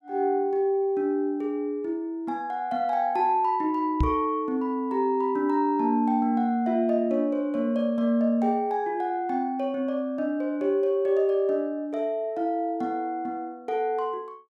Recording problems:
microphone bump; at 4 s; peak +5 dB vs average level

